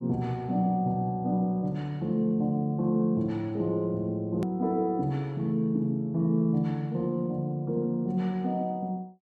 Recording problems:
edit click; at 4.5 s

